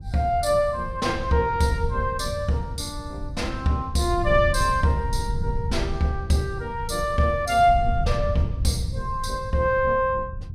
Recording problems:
wind noise; below 100 Hz, SNR 7 dB

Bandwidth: 15 kHz